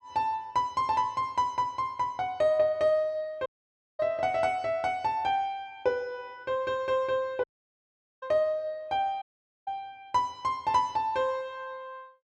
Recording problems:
audio cutting out; at 3.5 s for 0.5 s, at 7.5 s for 1 s and at 9 s

